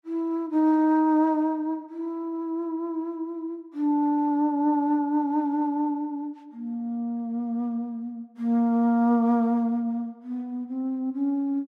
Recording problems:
none

